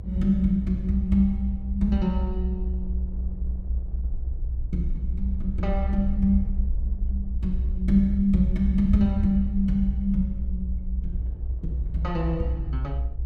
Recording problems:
rumble; below 64 Hz, strongest tone 60 Hz, SNR 4 dB
wind on the microphone; below 150 Hz, SNR 21 dB

